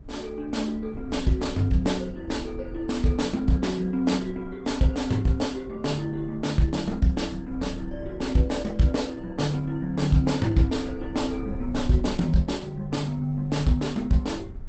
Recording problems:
lossy codec; Opus, log-spectral distance 3 dB, nothing above 8 kHz
wind noise; below 100 Hz, SNR 16 dB

